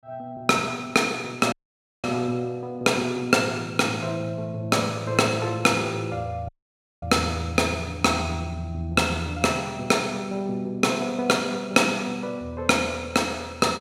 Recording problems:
audio cutting out; at 1.5 s for 0.5 s and at 6.5 s for 0.5 s

